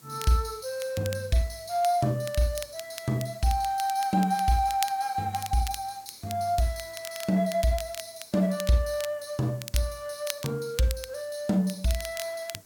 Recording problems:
background hiss; SNR 24 dB
crackling; vinyl, SNR 13 dB

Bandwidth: 17.5 kHz